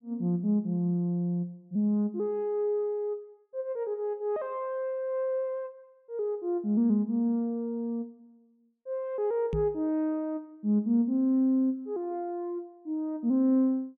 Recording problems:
microphone bump; at 9.5 s; peak 0 dB vs average level

